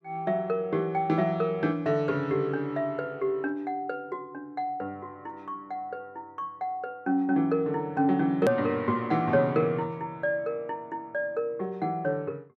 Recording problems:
click at an edit; at 8.5 s

